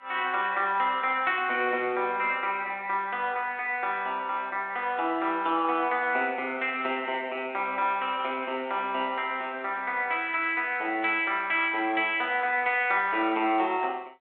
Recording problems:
telephone audio; 280 Hz to 3.7 kHz, G.726

